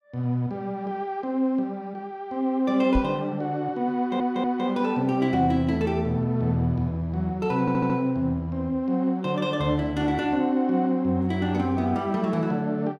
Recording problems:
microphone bump; at 3 s; peak +1 dB vs average level
stutter; at 4 s and at 7.5 s

